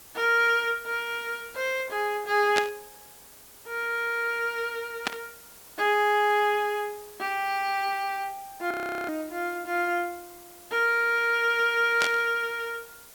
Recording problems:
hiss; slope -2 dB per octave, SNR 20 dB
static burst; at 2.5 s, at 5 s and at 12 s; peak +4 dB vs average level
frozen audio; at 8.5 s

